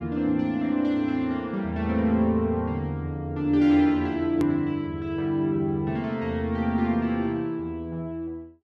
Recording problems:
edit click; at 4.5 s

